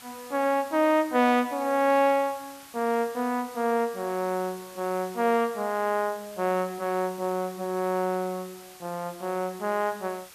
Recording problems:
background hiss; slope 0 dB per octave, SNR 19 dB

